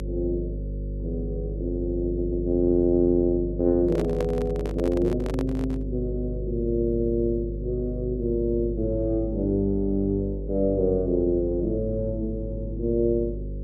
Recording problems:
hum; 50 Hz, harmonics up to 550 Hz, SNR 7 dB
audio stuttering; at 2 s
microphone handling noise; from 4 to 6 s; peak -3 dB vs average level

